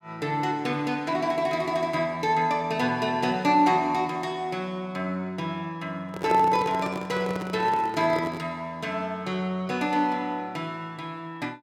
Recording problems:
handling noise; from 6 to 8.5 s; peak +1 dB vs average level

